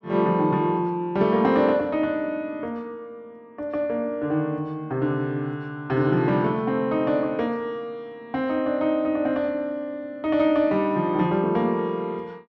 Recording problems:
none

